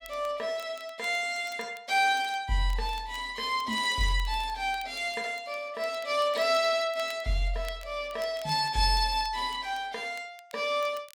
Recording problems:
crackling; vinyl, SNR 24 dB

